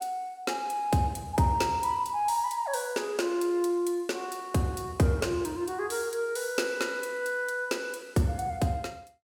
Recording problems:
none

